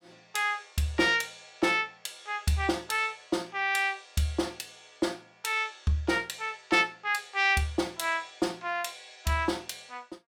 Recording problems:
none

